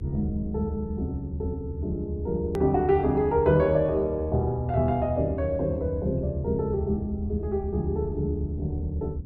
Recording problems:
hum; 60 Hz, harmonics up to 480 Hz, SNR 21 dB
low-frequency rumble; below 82 Hz, strongest tone 78 Hz, SNR 7 dB
hard cut with a click; at 2.5 s

